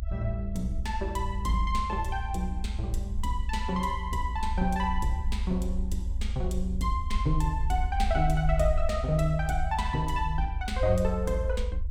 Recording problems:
rumble; below 74 Hz, SNR 2 dB

